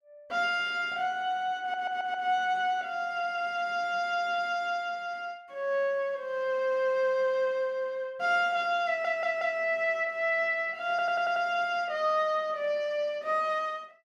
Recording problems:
stutter; at 1.5 s, at 9 s and at 11 s

